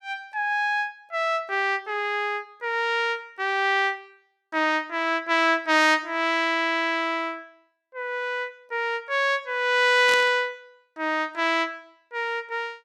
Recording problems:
static burst; at 10 s; peak -3 dB vs average level

